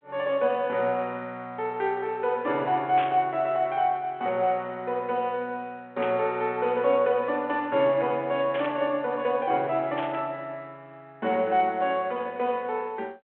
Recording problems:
telephone audio; 260 Hz to 3.4 kHz, G.726
static burst; 4 times, first at 3 s; peak -5 dB vs average level

